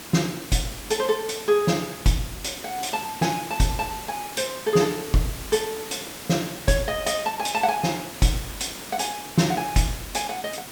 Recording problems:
hiss; slope -3 dB per octave, SNR 11 dB

